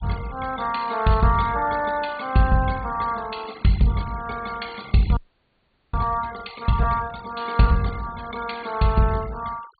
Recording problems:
treble cut off; nothing above 4.6 kHz
denoising artefacts; signal-to-artefact ratio 20 dB
audio freezing; at 5 s for 1 s

